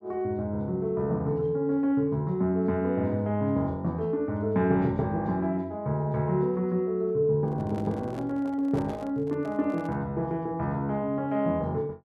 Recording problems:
microphone handling noise; from 7.5 to 10 s; peak -9 dB vs average level

